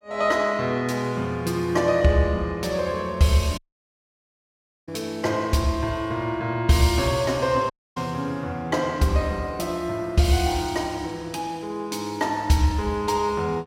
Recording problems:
audio cutting out; at 3.5 s for 1.5 s and at 7.5 s

